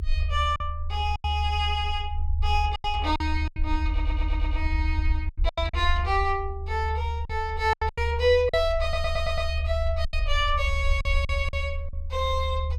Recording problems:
low-frequency rumble; below 76 Hz, SNR 2 dB
lost packets; 9% of the sound replaced, filled with silence
audio stuttering; at 4 s and at 9 s

